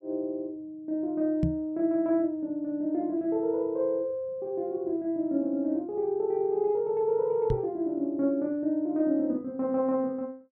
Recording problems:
knock on the microphone; at 1.5 s and at 7.5 s; peak +5 dB vs average level

